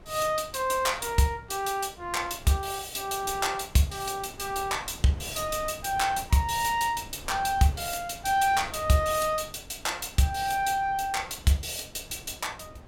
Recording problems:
wind noise; below 460 Hz, SNR 20 dB

